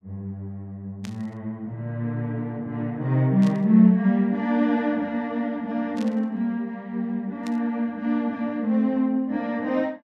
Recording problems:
burst of static; 4 times, first at 1 s; peak -12 dB vs average level

